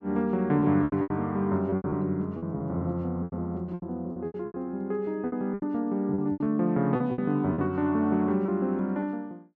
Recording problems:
lost packets; 13% of the sound replaced, filled with repeated pitch periods

